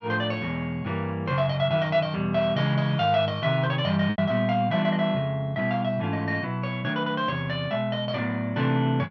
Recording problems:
packet loss; 0.9% of the sound replaced, filled with repeated pitch periods

